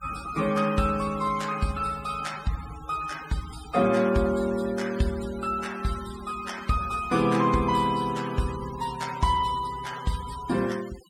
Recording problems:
noise reduction artefacts; signal-to-artefact ratio 16 dB

